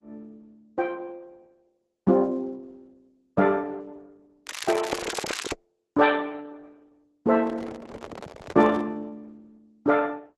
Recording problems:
codec artefacts; Opus, log-spectral distance 5 dB
crackle; from 4.5 to 5.5 s; loose cable, SNR 11 dB
microphone handling noise; from 7.5 to 9 s; peak -8 dB vs average level

